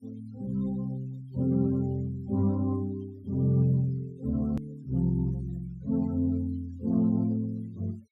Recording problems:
denoising artefacts; signal-to-artefact ratio 27 dB
hard cut with a click; at 4.5 s

